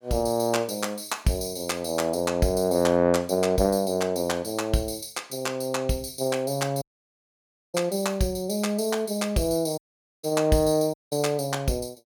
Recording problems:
audio cutting out; at 7 s for 1 s, at 10 s and at 11 s

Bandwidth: 18 kHz